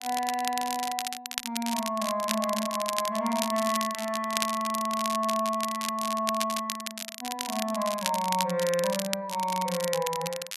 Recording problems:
crackling; vinyl, SNR 5 dB

